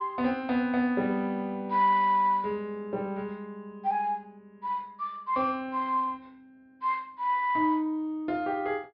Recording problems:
low-pass filter; nothing above 5.5 kHz

